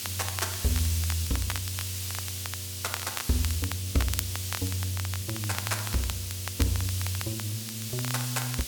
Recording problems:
electrical hum; 60 Hz, harmonics up to 1.2 kHz, SNR 20 dB
hiss; slope +4 dB per octave, SNR 2 dB
crackle; vinyl, SNR 7 dB

